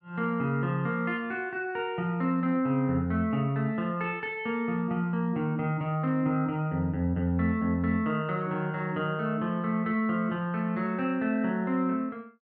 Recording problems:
none

